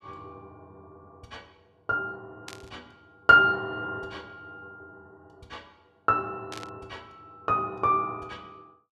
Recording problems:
burst of static; at 2.5 s and at 6.5 s; peak -11 dB vs average level

